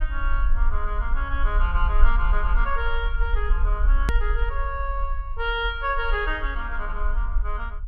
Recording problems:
low-frequency rumble; below 44 Hz, strongest tone 20 Hz, SNR -2 dB
edit click; at 4 s

